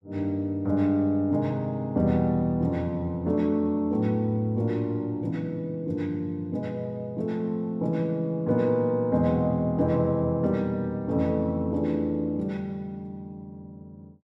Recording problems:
none

